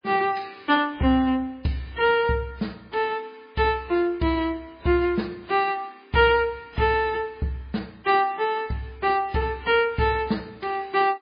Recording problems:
lossy codec; MP3, log-spectral distance 3 dB, nothing above 4.2 kHz

